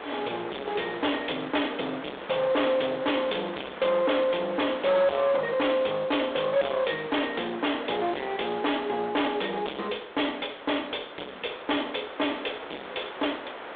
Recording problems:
telephone audio; 320 Hz to 3.5 kHz, G.726
distorted audio; hard clipping, signal-to-distortion ratio 6 dB
background hiss; SNR 12 dB

